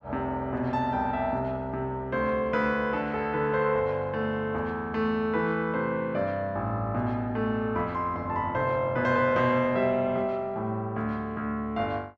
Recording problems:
none

